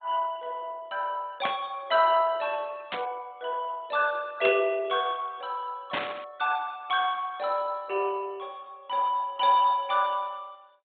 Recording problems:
treble cut off; nothing above 3.7 kHz
codec artefacts; MP2, log-spectral distance 3 dB
burst of static; 4 times, first at 1.5 s; peak +1 dB vs average level

